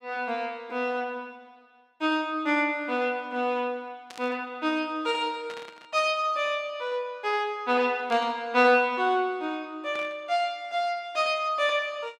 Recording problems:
burst of static; 4 times, first at 4 s; peak -11 dB vs average level

